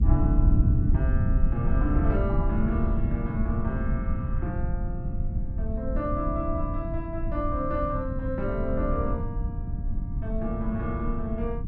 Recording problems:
rumble; below 110 Hz, SNR -3 dB

